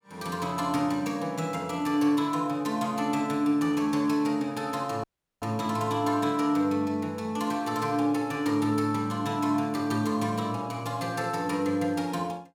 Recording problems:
audio cutting out; at 5 s

